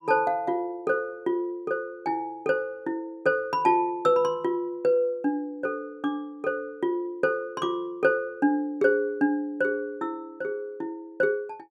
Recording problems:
none

